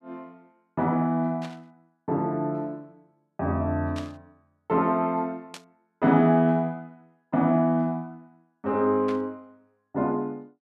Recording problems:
static burst; 4 times, first at 1.5 s; peak -10 dB vs average level

